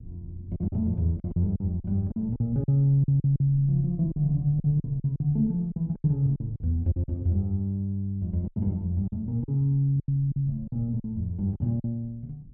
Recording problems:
rumble; below 150 Hz, SNR 20 dB
packet loss; 11% of the sound replaced, filled with silence

